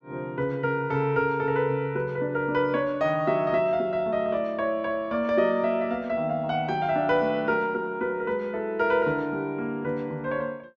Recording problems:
none

